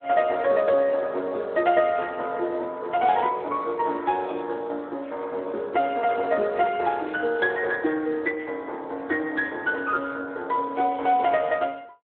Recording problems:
phone line; 260 Hz to 3.8 kHz, Speex

